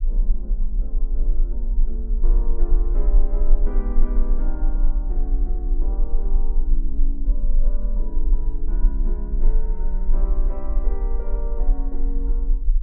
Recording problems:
low-frequency rumble; below 34 Hz, strongest tone 22 Hz, SNR -13 dB

